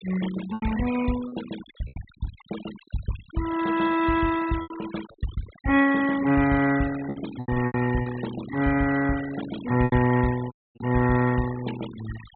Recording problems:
treble missing; nothing above 4 kHz
denoising artefacts; signal-to-artefact ratio 15 dB
packet loss; 6% of the sound replaced, filled with repeated pitch periods
dropout; at 11 s

